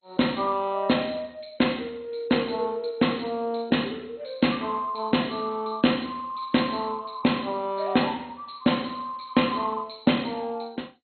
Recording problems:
lossy codec; MP2, log-spectral distance 9 dB, nothing above 4.2 kHz

